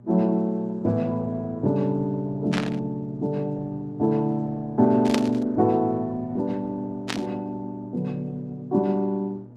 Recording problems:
lossy codec; Opus, log-spectral distance 2 dB
hum; 60 Hz, harmonics up to 840 Hz, SNR 19 dB
static burst; at 2.5 s, at 5 s and at 7 s; peak +2 dB vs average level

